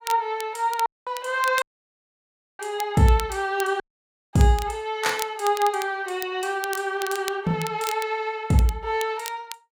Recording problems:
crackling; vinyl, SNR 14 dB
dropout; at 1 s, at 1.5 s for 1 s and at 4 s for 0.5 s

